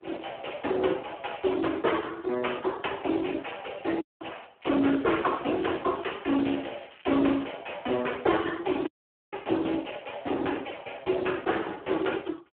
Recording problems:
telephone audio; 280 Hz to 3.3 kHz, Speex
dropout; at 4 s and at 9 s
crackling; from 4.5 to 7.5 s; loose cable, SNR 21 dB

